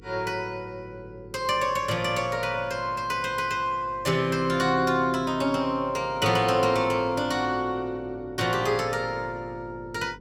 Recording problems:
hum; 50 Hz, harmonics up to 500 Hz, SNR 23 dB

